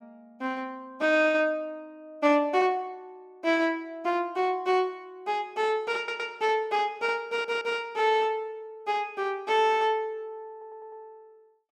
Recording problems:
stutter; at 6 s, at 7.5 s and at 11 s

